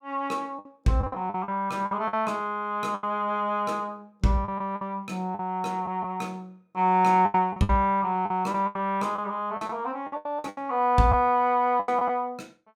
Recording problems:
lost packets; 11% of the sound replaced, filled with the last packet

